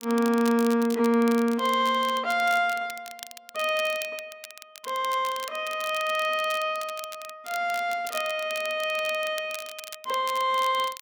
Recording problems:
crackle; vinyl, SNR 15 dB

